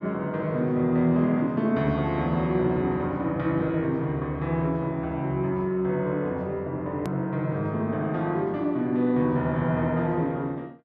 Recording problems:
edit click; at 7 s

